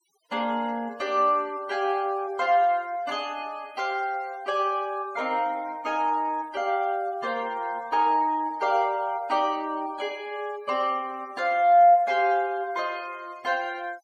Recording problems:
denoising artefacts; signal-to-artefact ratio 26 dB

